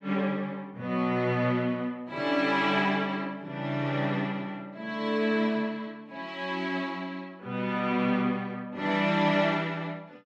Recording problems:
none

